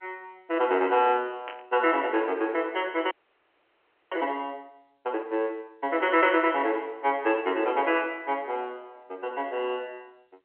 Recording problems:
phone line; 280 Hz to 3.2 kHz, G.711
static burst; at 1.5 s; peak -9 dB vs average level
frozen audio; at 3 s for 1 s

